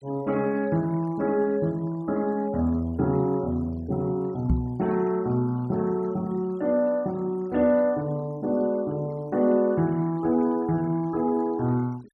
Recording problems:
noise reduction artefacts; signal-to-artefact ratio 26 dB
microphone bump; at 4.5 s; peak +4 dB vs average level

